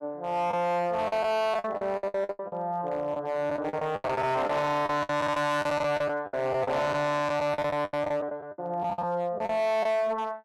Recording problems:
distortion; hard clipping, signal-to-distortion ratio 6 dB
packet loss; 15% of the sound replaced, filled with the last packet

